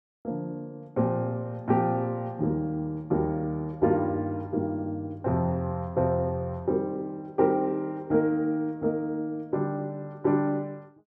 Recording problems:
none

